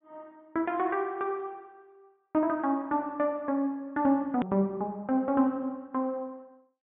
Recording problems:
low-pass filter; nothing above 3.7 kHz
hard cut with a click; at 4.5 s

